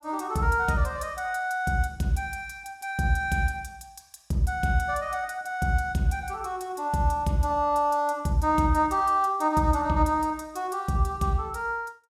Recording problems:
none

